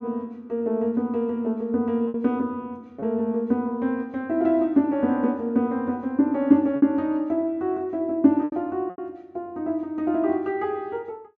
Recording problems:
packet loss; 3% of the sound replaced, filled with repeated pitch periods

